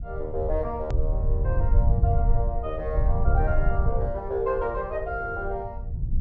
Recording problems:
low-pass filter; nothing above 8 kHz
rumble; below 76 Hz, SNR -3 dB
click at an edit; at 1 s

